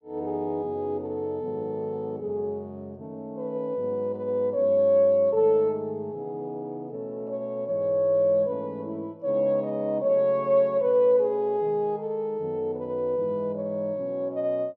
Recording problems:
none

